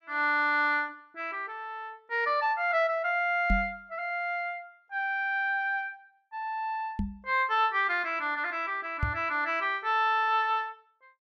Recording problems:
knock on the microphone; at 3.5 s, at 7 s and at 9 s; peak +3 dB vs average level

